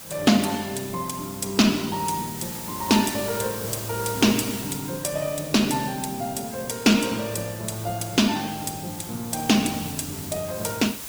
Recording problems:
codec artefacts; Opus, log-spectral distance 5 dB, nothing above 19 kHz
hiss; slope -1 dB per octave, SNR 11 dB

